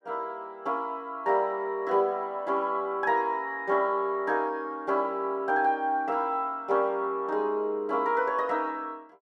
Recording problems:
none

